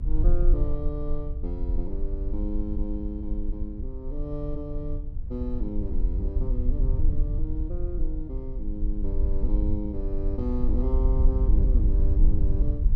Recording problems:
low-frequency rumble; below 52 Hz, strongest tone 22 Hz, SNR -7 dB

